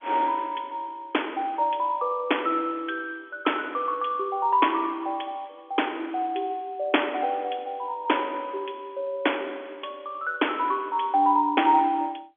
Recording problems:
telephone audio; 260 Hz to 3.5 kHz, G.711

